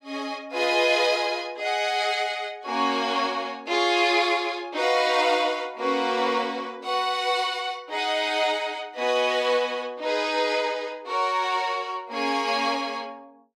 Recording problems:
none

